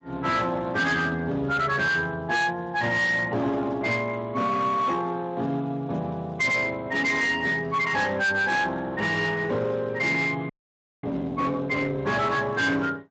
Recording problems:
codec artefacts; Speex, log-spectral distance 3 dB, nothing above 7.6 kHz
distorted audio; hard clipping, signal-to-distortion ratio 10 dB
frozen audio; at 11 s for 0.5 s

